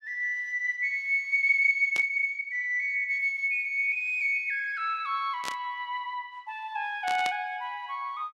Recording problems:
burst of static; at 2 s, at 5.5 s and at 7 s; peak -4 dB vs average level

